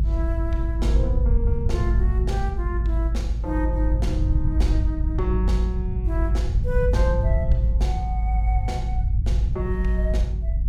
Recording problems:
rumble; below 74 Hz, strongest tone 52 Hz, SNR -7 dB

